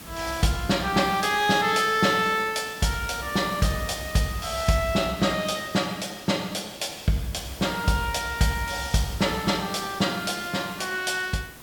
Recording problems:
background hiss; slope -3 dB per octave, SNR 16 dB

